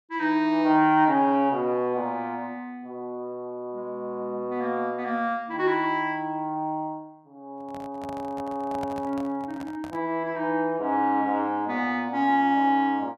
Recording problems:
handling noise; from 7.5 to 10 s; peak -7 dB vs average level

